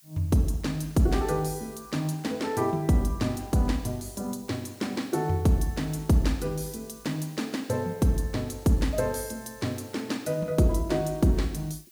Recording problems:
background hiss; slope +5 dB per octave, SNR 25 dB

